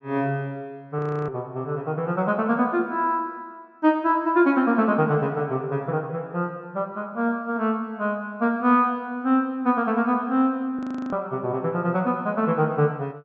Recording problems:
treble cut off; nothing above 8 kHz
frozen audio; at 1 s and at 11 s

